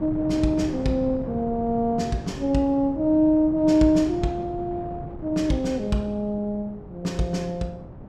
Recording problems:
wind on the microphone; below 330 Hz, SNR 13 dB

